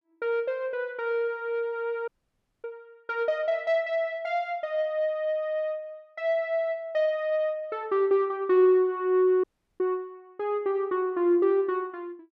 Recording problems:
audio cutting out; at 2 s for 0.5 s and at 9.5 s

